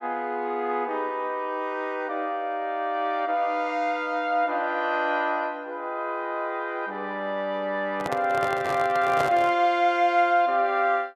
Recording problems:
microphone handling noise; from 8 to 9.5 s; peak 0 dB vs average level

